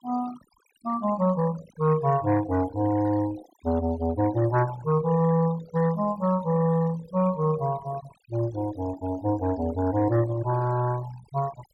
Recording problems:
noise reduction artefacts; signal-to-artefact ratio 17 dB

